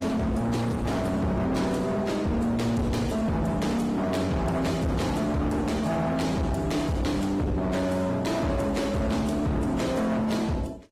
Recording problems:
lossy codec; Opus, then AAC, log-spectral distance 3 dB, nothing above 15.1 kHz
distorted audio; hard clipping, uneven, signal-to-distortion ratio 7 dB

